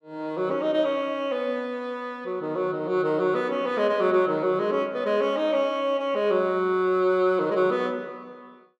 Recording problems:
none

